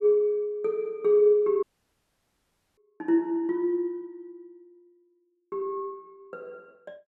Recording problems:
dropout; at 1.5 s for 1 s

